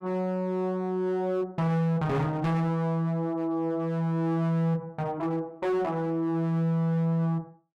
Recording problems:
distortion; hard clipping, signal-to-distortion ratio 11 dB

